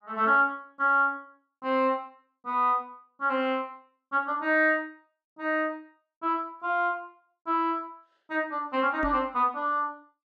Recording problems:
microphone bump; at 9 s; peak -2 dB vs average level

